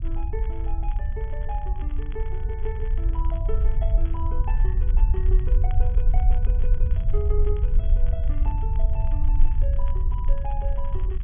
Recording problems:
treble missing; nothing above 3.4 kHz
low-frequency rumble; below 54 Hz, SNR -13 dB
crackle; vinyl, SNR 18 dB

